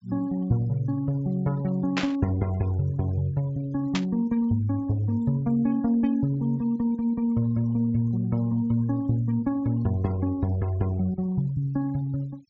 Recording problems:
treble missing; nothing above 8 kHz
denoising artefacts; signal-to-artefact ratio 26 dB
burst of static; at 2 s and at 4 s; peak +2 dB vs average level

